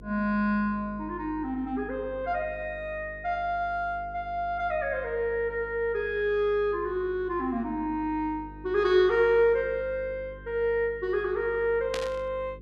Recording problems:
hum; 50 Hz, harmonics up to 500 Hz, SNR 19 dB
burst of static; at 12 s; peak -2 dB vs average level

